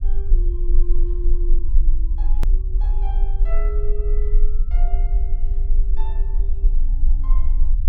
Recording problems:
rumble; below 36 Hz, strongest tone 18 Hz, SNR -17 dB
edit click; at 2.5 s

